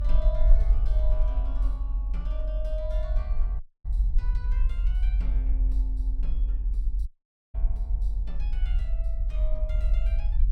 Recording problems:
rumble; below 46 Hz, SNR -16 dB
audio cutting out; at 3.5 s and at 7 s

